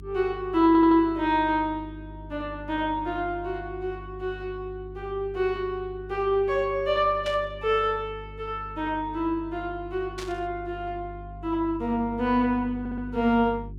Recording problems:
hum; 50 Hz, harmonics up to 400 Hz, SNR 16 dB
audio stuttering; at 0.5 s and at 13 s
burst of static; at 7.5 s and at 10 s; peak -7 dB vs average level

